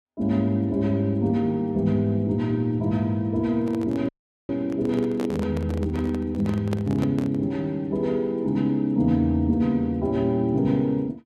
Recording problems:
handling noise; from 3.5 to 7.5 s; peak -4 dB vs average level
dropout; at 4 s

